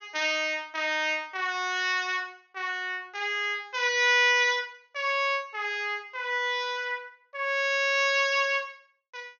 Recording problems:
treble cut off; nothing above 6.6 kHz

